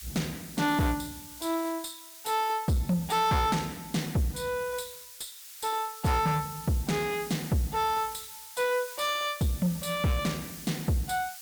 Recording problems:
distorted audio; soft clipping, signal-to-distortion ratio 10 dB
hiss; slope +5 dB per octave, SNR 13 dB

